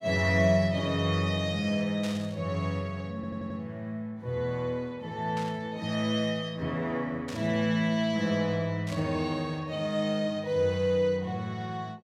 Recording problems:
burst of static; 4 times, first at 2 s; peak -7 dB vs average level
audio stuttering; at 3 s

